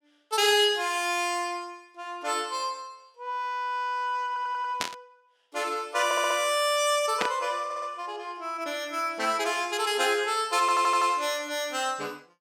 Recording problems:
audio stuttering; 4 times, first at 4.5 s
static burst; at 5 s and at 7 s; peak +4 dB vs average level

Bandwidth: 17 kHz